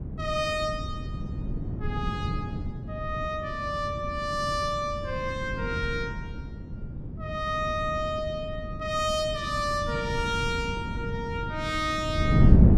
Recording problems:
wind noise; below 180 Hz, SNR 2 dB

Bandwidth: 15.5 kHz